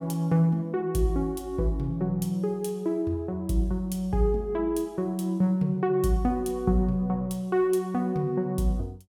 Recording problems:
none

